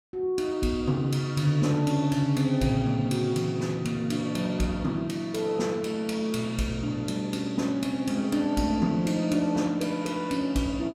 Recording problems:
none

